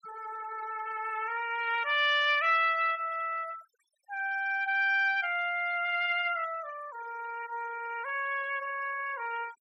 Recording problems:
noise reduction artefacts; signal-to-artefact ratio 20 dB

